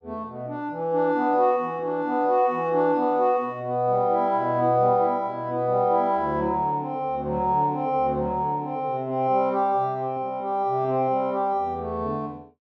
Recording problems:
none

